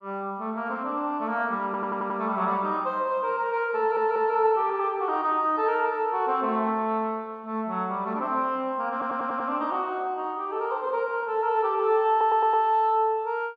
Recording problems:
stutter; 4 times, first at 1.5 s

